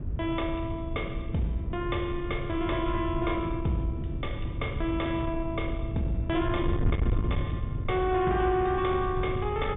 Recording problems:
treble cut off; nothing above 3.6 kHz
distortion; soft clipping, signal-to-distortion ratio 10 dB
wind on the microphone; below 140 Hz, SNR 3 dB

